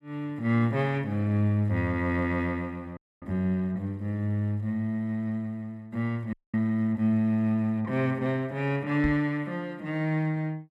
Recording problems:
frozen audio; at 3 s and at 6.5 s
microphone bump; at 9 s; peak 0 dB vs average level

